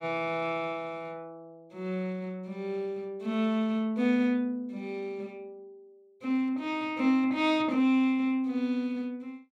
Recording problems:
none

